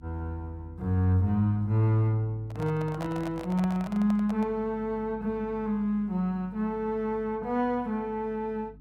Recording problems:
hum; 50 Hz, harmonics up to 300 Hz, SNR 21 dB
handling noise; from 2.5 to 4.5 s; peak -6 dB vs average level

